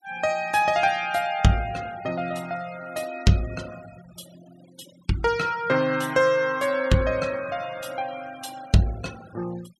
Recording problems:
noise reduction artefacts; signal-to-artefact ratio 21 dB

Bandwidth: 14.5 kHz